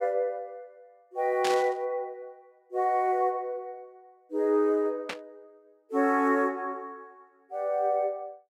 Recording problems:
burst of static; at 1.5 s and at 5 s; peak -1 dB vs average level

